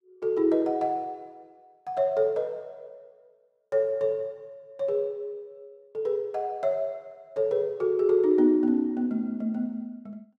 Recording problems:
none

